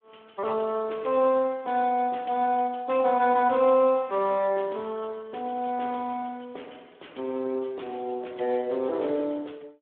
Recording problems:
telephone audio; 280 Hz to 3.6 kHz, Speex

